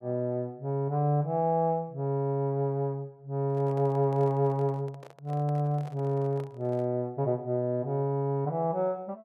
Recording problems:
handling noise; from 3.5 to 7 s; peak -12 dB vs average level

